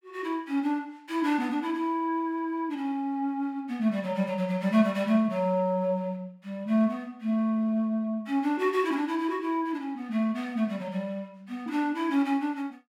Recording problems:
none

